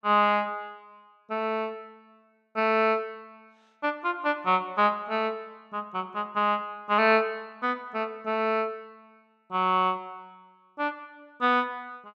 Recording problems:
none

